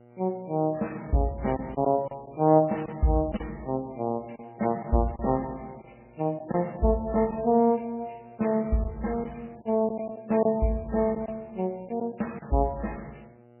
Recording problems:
codec artefacts; MP3, log-spectral distance 7 dB, nothing above 2.9 kHz
hum; 60 Hz, harmonics up to 1.6 kHz, SNR 26 dB
lost packets; 4% of the sound replaced, filled with silence

